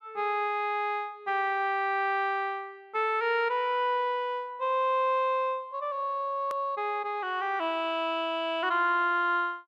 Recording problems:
hard cut with a click; at 6.5 s

